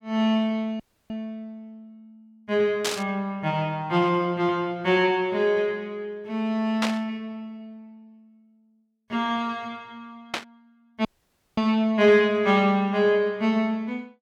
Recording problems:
dropout; at 1 s and at 11 s for 0.5 s
burst of static; at 3 s, at 7 s and at 10 s; peak +1 dB vs average level

